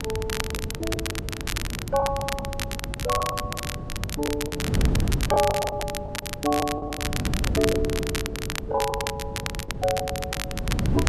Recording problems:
wind noise; below 200 Hz, SNR 3 dB
crackle; vinyl, SNR 3 dB
lost packets; 12% of the sound replaced, filled with the last packet

